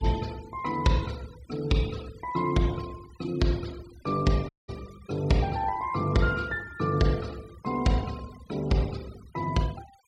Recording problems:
denoising artefacts; signal-to-artefact ratio 20 dB
audio cutting out; at 4.5 s

